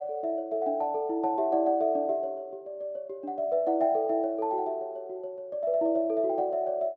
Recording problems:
none

